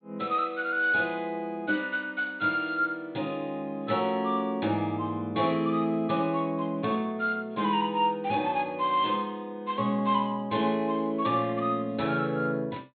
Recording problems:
treble missing; nothing above 4.1 kHz

